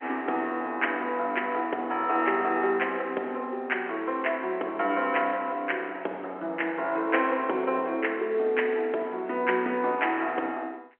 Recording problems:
phone line; 280 Hz to 3.1 kHz, G.711

